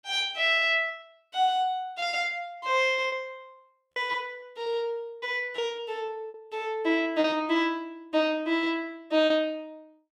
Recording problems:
lost packets; 6% of the sound replaced, filled with repeated pitch periods

